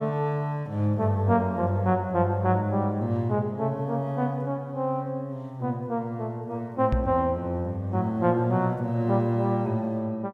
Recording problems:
microphone bump; at 7 s; peak +4 dB vs average level

